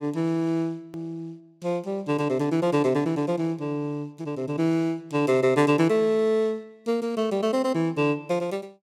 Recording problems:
click at an edit; at 1 s

